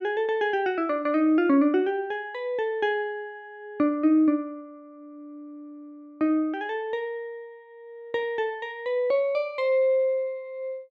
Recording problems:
none

